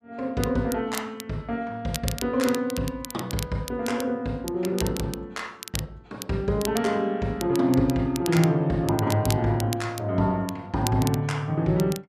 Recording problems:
crackle; vinyl, SNR 12 dB

